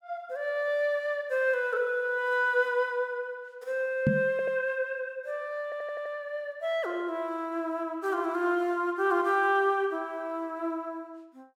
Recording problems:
knock on the microphone; at 4 s; peak +7 dB vs average level
audio stuttering; at 4.5 s and at 5.5 s

